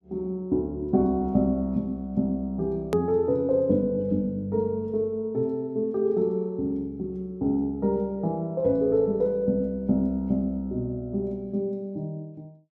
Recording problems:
hard cut with a click; at 3 s

